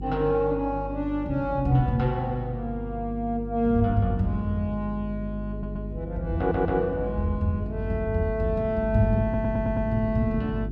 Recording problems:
electrical hum; 50 Hz, harmonics up to 400 Hz, SNR 9 dB
stutter; at 5.5 s, at 6.5 s and at 9 s

